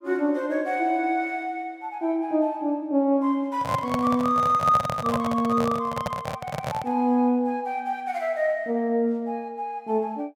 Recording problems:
handling noise; from 3.5 to 7 s; peak 0 dB vs average level

